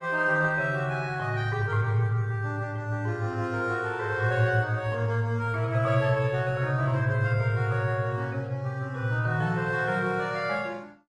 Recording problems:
lossy codec; Opus, log-spectral distance 2 dB, nothing above 10.4 kHz

